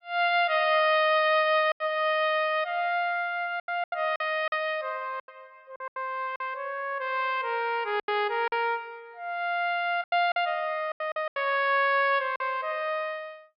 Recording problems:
low-pass filter; nothing above 5.5 kHz
lost packets; 8% of the sound replaced, filled with silence

